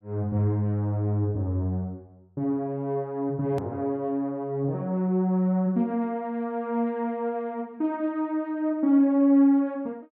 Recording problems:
hard cut with a click; at 3.5 s

